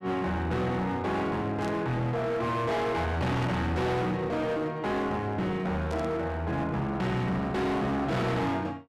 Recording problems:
distorted audio; hard clipping, uneven, signal-to-distortion ratio 6 dB
burst of static; at 1.5 s, at 3.5 s and at 6 s; peak -12 dB vs average level

